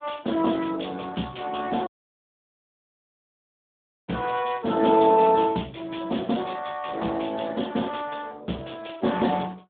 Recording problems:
phone line; 150 Hz to 3.6 kHz, Speex
audio cutting out; at 2 s for 2 s

